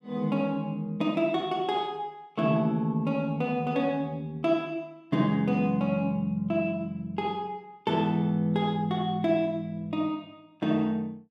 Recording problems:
none

